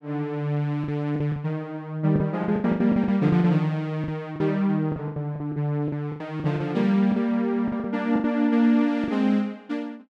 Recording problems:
lost packets; 13% of the sound replaced, filled with the last packet

